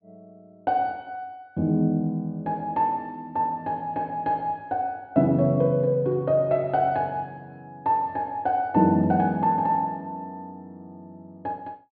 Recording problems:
treble cut off; nothing above 4.7 kHz

